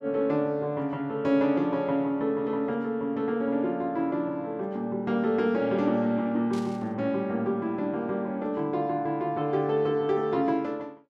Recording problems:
static burst; at 6.5 s; peak -13 dB vs average level

